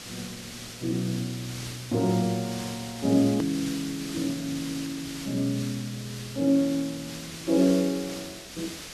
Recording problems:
background hiss; SNR 10 dB
click at an edit; at 3.5 s

